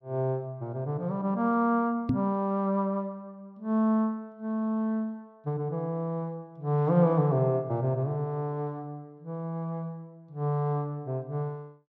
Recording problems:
microphone bump; at 2 s; peak +6 dB vs average level

